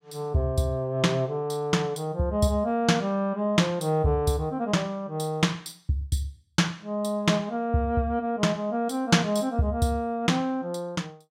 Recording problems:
none

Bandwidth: 16 kHz